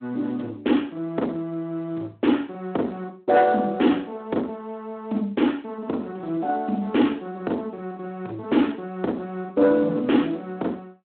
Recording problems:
telephone audio; 190 Hz to 3.5 kHz, Speex
distortion; soft clipping, signal-to-distortion ratio 13 dB

